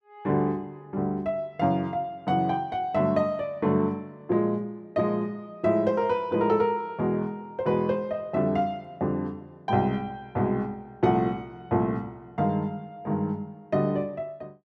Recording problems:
none

